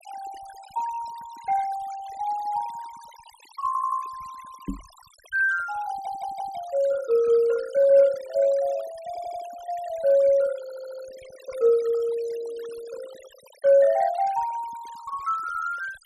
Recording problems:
noise reduction artefacts; signal-to-artefact ratio 22 dB
stutter; 4 times, first at 3.5 s
microphone bump; at 4.5 s; peak -3 dB vs average level

